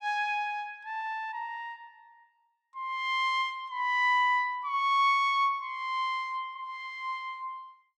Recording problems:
none

